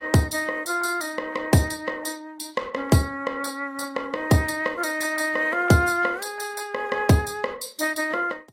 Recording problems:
codec artefacts; AAC, log-spectral distance 4 dB, nothing above 15.1 kHz

